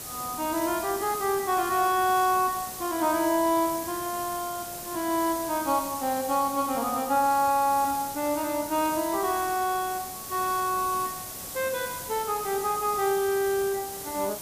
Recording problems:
hiss; SNR 9 dB

